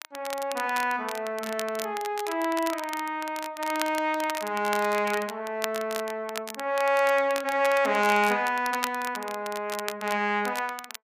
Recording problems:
crackle; vinyl, SNR 11 dB

